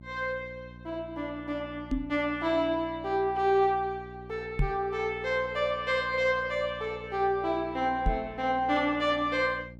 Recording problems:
electrical hum; 60 Hz, harmonics up to 660 Hz, SNR 18 dB
microphone thump; at 2 s, at 4.5 s and at 8 s; peak +4 dB vs average level

